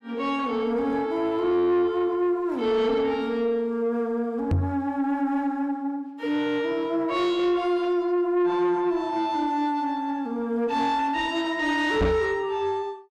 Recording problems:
distorted audio; soft clipping, signal-to-distortion ratio 11 dB
knock on the microphone; at 4.5 s and at 12 s; peak +4 dB vs average level

